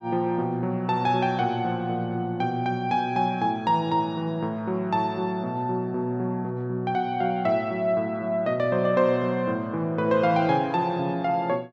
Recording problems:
none

